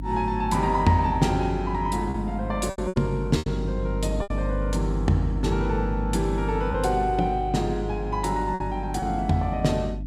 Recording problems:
hum; 50 Hz, harmonics up to 300 Hz, SNR 5 dB
packet loss; 5% of the sound replaced, filled with repeated pitch periods

